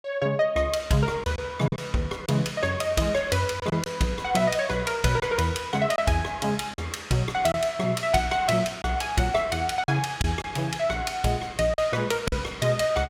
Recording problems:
packet loss; 4% of the sound replaced, filled with silence

